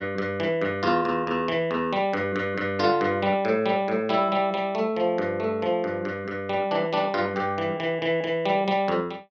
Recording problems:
none

